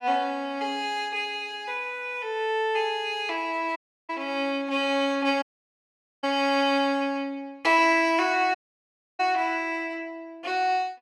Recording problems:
dropout; at 4 s, at 5.5 s for 1 s and at 8.5 s for 0.5 s

